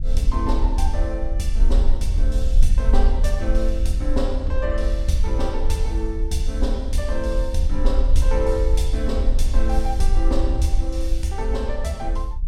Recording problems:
rumble; below 50 Hz, SNR -4 dB

